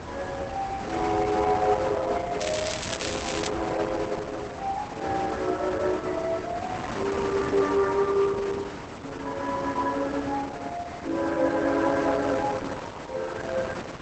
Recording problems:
lossy codec; Opus, log-spectral distance 5 dB
wind on the microphone; below 1.6 kHz, SNR 9 dB
crackling; from 2.5 to 3.5 s; loose cable, SNR 5 dB

